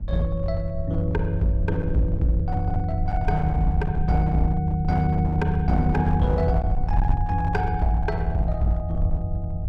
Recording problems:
distorted audio; hard clipping, uneven, signal-to-distortion ratio 12 dB
wind noise; below 76 Hz, SNR 6 dB

